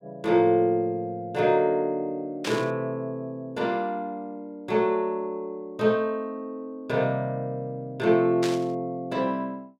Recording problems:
burst of static; at 2.5 s and at 8.5 s; peak -2 dB vs average level

